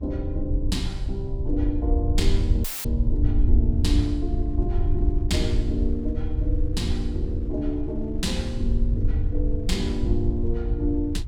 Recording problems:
low-frequency rumble; below 78 Hz, SNR -3 dB
wind noise; below 270 Hz, SNR 20 dB
dropout; at 2.5 s; filled with static

